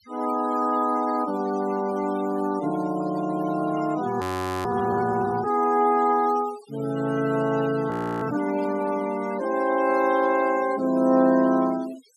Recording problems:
noise reduction artefacts; signal-to-artefact ratio 18 dB
audio freezing; at 4 s and at 8 s

